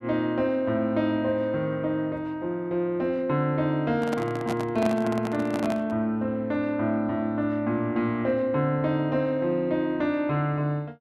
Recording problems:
microphone handling noise; from 4 to 6 s; peak -1 dB vs average level

